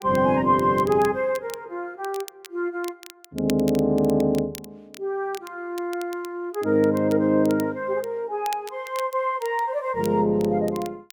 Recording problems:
crackling; vinyl, SNR 20 dB

